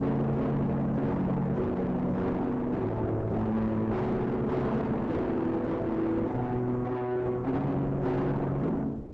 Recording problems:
lossy codec; Opus, log-spectral distance 2 dB
distorted audio; soft clipping, signal-to-distortion ratio 5 dB
wind noise; below 490 Hz, SNR 16 dB

